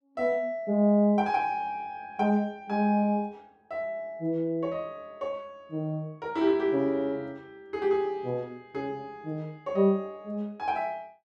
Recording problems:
none

